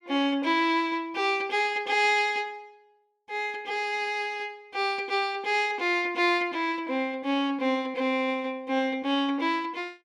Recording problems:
none

